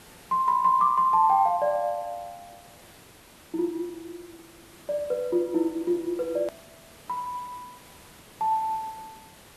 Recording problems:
background hiss; slope -3 dB per octave, SNR 24 dB
hard cut with a click; at 6.5 s

